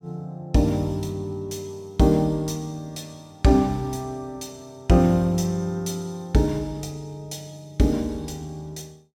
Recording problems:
none

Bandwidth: 17 kHz